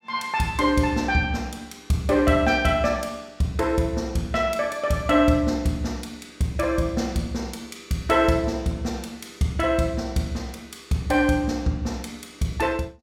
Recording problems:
none

